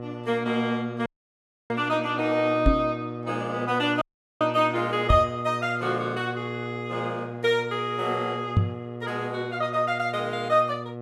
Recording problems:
electrical hum; 60 Hz, harmonics up to 1.3 kHz, SNR 9 dB
dropout; at 1 s for 0.5 s and at 4 s
microphone bump; at 2.5 s, at 5 s and at 8.5 s; peak +9 dB vs average level

